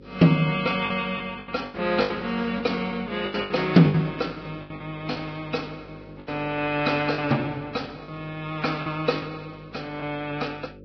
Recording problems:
lossy codec; Vorbis, log-spectral distance 4 dB, nothing above 5.2 kHz
mains hum; 50 Hz, harmonics up to 550 Hz, SNR 20 dB
lost packets; 9% of the sound replaced, filled with the last packet

